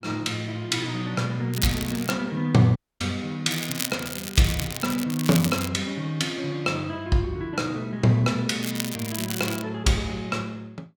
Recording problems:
crackling; at 1.5 s, from 3.5 to 5.5 s and at 8.5 s; loose cable, SNR 7 dB
dropout; at 3 s

